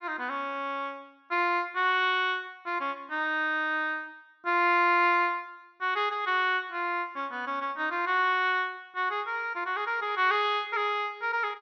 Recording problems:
treble missing; nothing above 6.2 kHz

